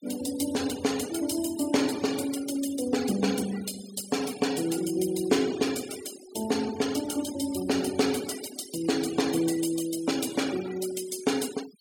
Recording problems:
denoising artefacts; signal-to-artefact ratio 12 dB

